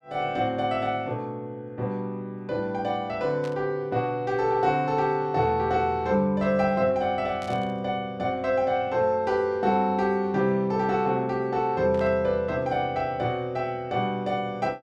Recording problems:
burst of static; at 3.5 s, at 7.5 s and at 12 s; peak -14 dB vs average level

